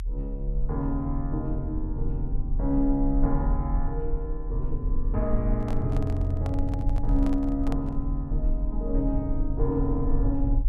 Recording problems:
rumble; below 42 Hz, SNR 2 dB
handling noise; from 5.5 to 8 s; peak -4 dB vs average level

